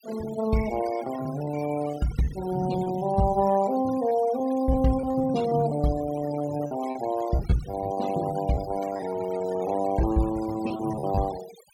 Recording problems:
noise reduction artefacts; signal-to-artefact ratio 16 dB
packet loss; 12% of the sound replaced, filled with repeated pitch periods

